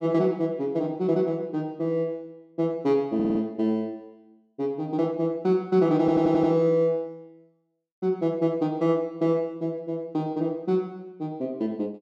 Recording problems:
stutter; at 3 s and at 6 s

